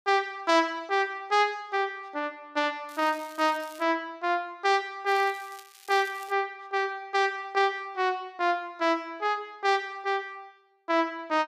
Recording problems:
crackling; at 3 s and from 5 to 6.5 s; loose cable, SNR 22 dB

